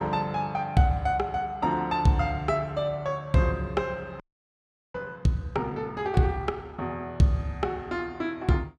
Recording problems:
frozen audio; at 4 s for 0.5 s

